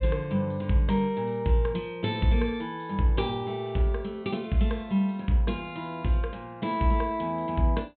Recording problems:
treble missing; nothing above 4 kHz

